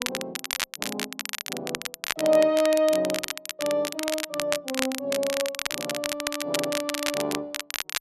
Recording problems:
crackling; vinyl, SNR 4 dB

